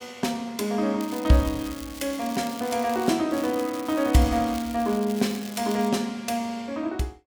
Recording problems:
crackle; from 1 to 3 s and from 3.5 to 6 s; loose cable, SNR 16 dB

